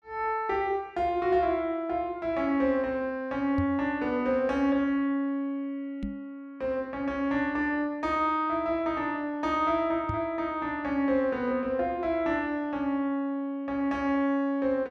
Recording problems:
microphone thump; at 3.5 s, at 6 s and at 10 s; peak -1 dB vs average level

